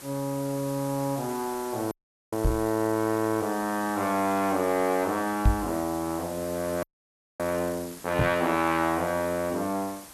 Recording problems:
hiss; slope -2 dB per octave, SNR 14 dB
audio freezing; at 2 s and at 7 s for 0.5 s
knock on the microphone; at 2.5 s, at 5.5 s and at 8 s; peak +9 dB vs average level

